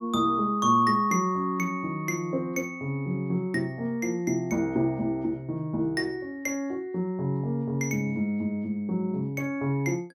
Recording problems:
none

